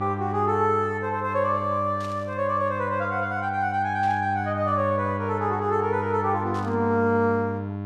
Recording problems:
electrical hum; 50 Hz, harmonics up to 1.1 kHz, SNR 8 dB
burst of static; at 2 s, at 4 s and at 6.5 s; peak -15 dB vs average level

